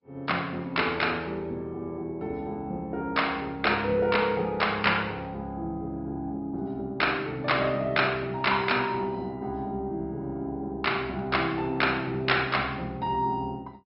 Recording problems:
treble missing; nothing above 5.3 kHz
lossy codec; Opus, log-spectral distance 2 dB

